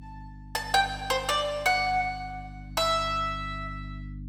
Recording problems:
hum; 50 Hz, harmonics up to 300 Hz, SNR 15 dB

